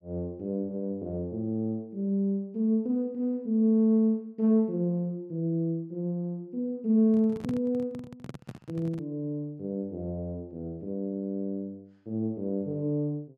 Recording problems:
microphone handling noise; from 7 to 9 s; peak -3 dB vs average level

